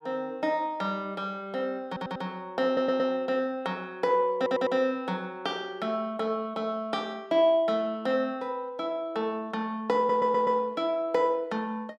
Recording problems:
audio stuttering; 4 times, first at 2 s

